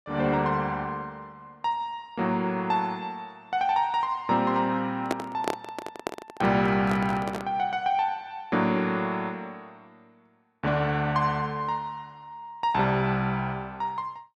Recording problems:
handling noise; from 5 to 7.5 s; peak +3 dB vs average level

